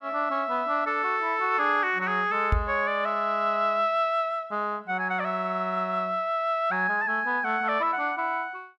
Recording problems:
microphone bump; at 2.5 s; peak +4 dB vs average level

